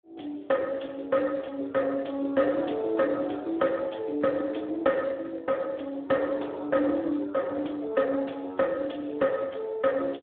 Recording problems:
phone line; 240 Hz to 2.5 kHz, Speex

